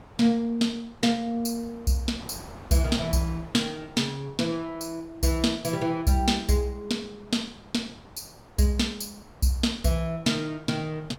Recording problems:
wind noise; below 950 Hz, SNR 21 dB

